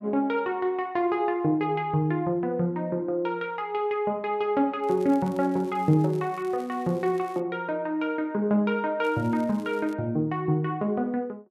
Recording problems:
crackle; from 5 to 7.5 s and at 9 s; loose cable, SNR 27 dB

